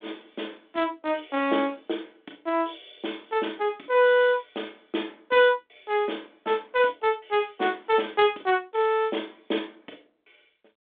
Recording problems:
telephone audio; 240 Hz to 3.6 kHz, G.726

